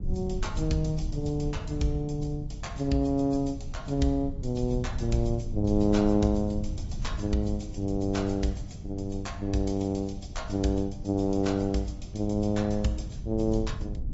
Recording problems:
treble missing; nothing above 7.6 kHz
codec artefacts; MP3, then AAC, log-spectral distance 3 dB
rumble; below 100 Hz, SNR 9 dB

